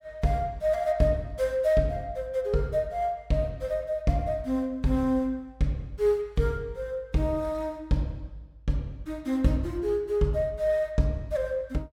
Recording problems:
none

